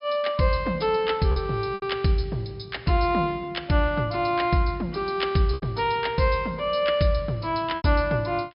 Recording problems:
treble missing; nothing above 5.5 kHz
packet loss; 3% of the sound replaced, filled with repeated pitch periods

